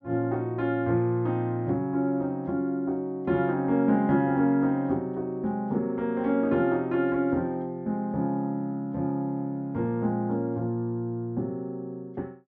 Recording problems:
low-pass filter; nothing above 7.3 kHz

